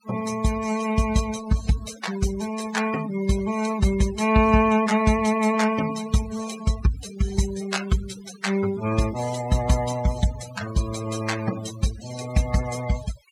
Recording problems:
noise reduction artefacts; signal-to-artefact ratio 13 dB

